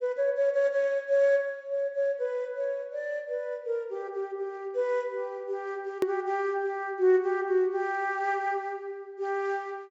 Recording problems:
treble cut off; nothing above 8 kHz
edit click; at 6 s

